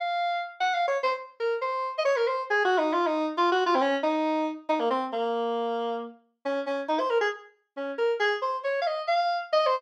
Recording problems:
none

